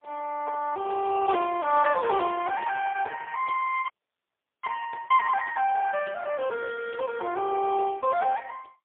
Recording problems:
phone line; 300 Hz to 3.1 kHz, AMR-NB, then MP3
frozen audio; at 4 s for 1 s

